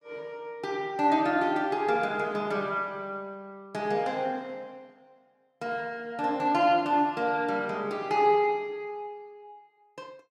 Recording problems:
none

